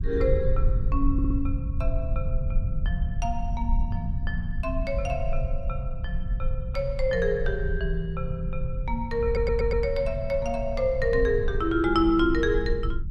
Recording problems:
rumble; below 68 Hz, SNR 3 dB
stutter; at 1 s and at 9.5 s

